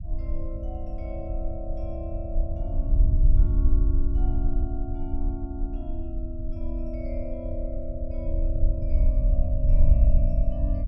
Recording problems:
rumble; below 56 Hz, SNR -10 dB

